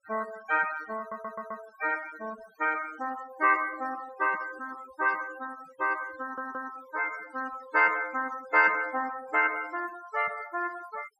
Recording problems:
noise reduction artefacts; signal-to-artefact ratio 17 dB
stutter; at 1 s and at 6 s

